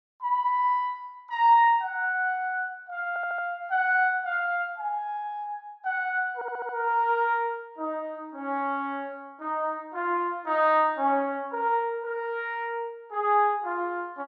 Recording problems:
audio stuttering; at 3 s and at 6.5 s

